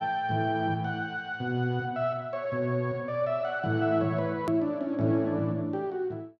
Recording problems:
hard cut with a click; at 4.5 s

